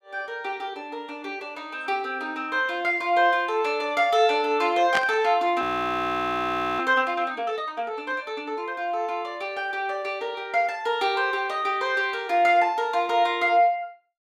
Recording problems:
burst of static; at 5 s; peak +1 dB vs average level
audio freezing; at 5.5 s for 1 s

